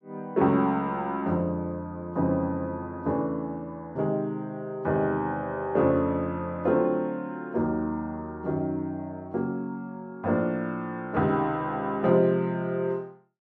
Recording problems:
none

